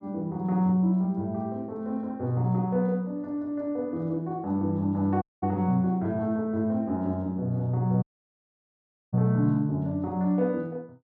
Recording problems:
dropout; at 5 s and at 8 s for 1 s

